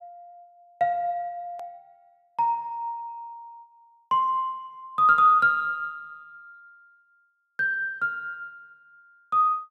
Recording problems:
edit click; at 1.5 s

